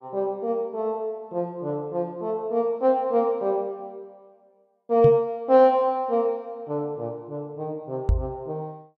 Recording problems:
knock on the microphone; at 5 s and at 8 s; peak +6 dB vs average level

